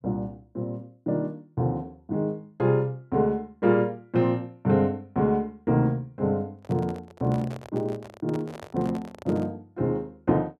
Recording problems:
handling noise; from 6.5 to 9.5 s; peak -8 dB vs average level

